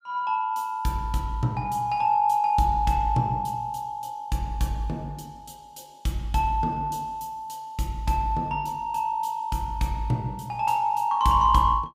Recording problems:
none

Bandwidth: 15.5 kHz